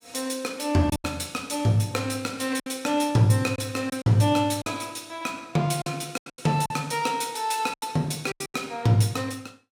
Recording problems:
packet loss; 8% of the sound replaced, filled with silence

